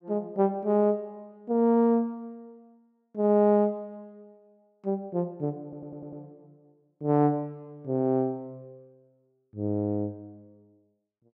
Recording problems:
stutter; at 5.5 s

